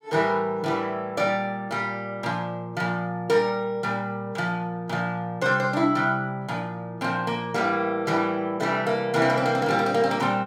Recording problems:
none

